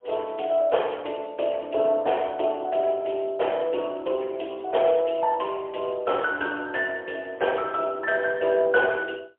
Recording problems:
phone line; 340 Hz to 3.3 kHz, AMR-NB, then MP3

